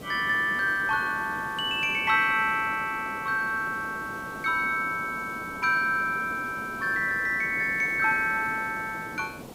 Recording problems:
background hiss; SNR 16 dB

